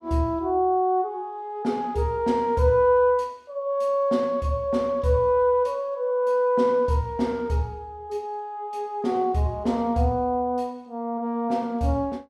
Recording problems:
none

